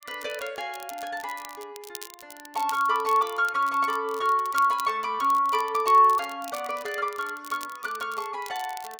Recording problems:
crackle; vinyl, SNR 18 dB

